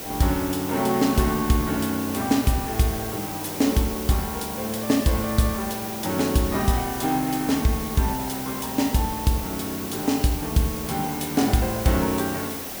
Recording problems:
hiss; SNR 8 dB

